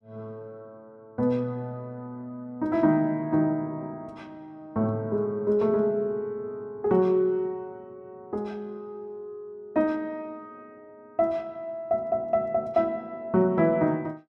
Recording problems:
none

